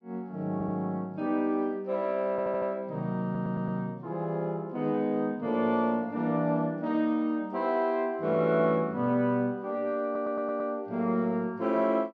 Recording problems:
stutter; 4 times, first at 0.5 s

